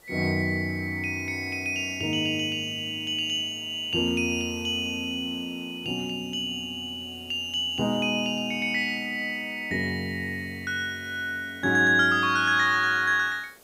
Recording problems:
background hiss; SNR 28 dB

